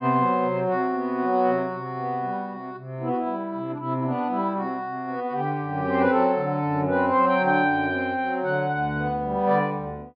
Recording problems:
treble missing; nothing above 5.5 kHz

